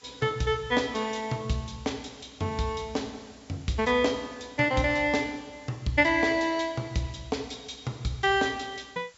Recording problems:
treble missing; nothing above 8 kHz
hiss; slope +1 dB per octave, SNR 27 dB

